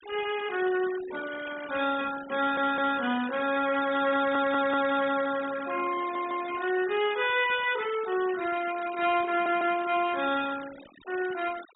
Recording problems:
low-pass filter; nothing above 4 kHz
noise reduction artefacts; signal-to-artefact ratio 15 dB
burst of static; at 1.5 s and at 5 s; peak -18 dB vs average level
stutter; 4 times, first at 2.5 s

